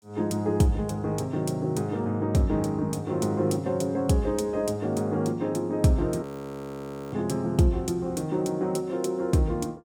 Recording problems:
frozen audio; at 6 s for 1 s

